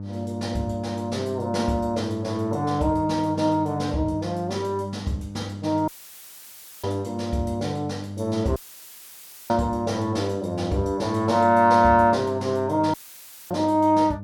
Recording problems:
hum; 50 Hz, harmonics up to 600 Hz, SNR 11 dB
audio cutting out; at 6 s for 1 s, at 8.5 s for 1 s and at 13 s for 0.5 s; filled with static

